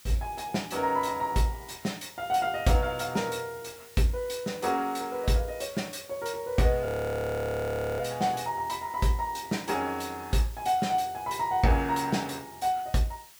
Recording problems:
background hiss; slope +2 dB per octave, SNR 20 dB
audio freezing; at 7 s for 1 s

